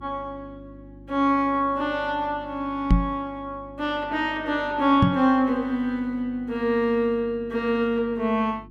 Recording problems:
hum; 50 Hz, harmonics up to 350 Hz, SNR 22 dB
knock on the microphone; at 3 s and at 5 s; peak +8 dB vs average level

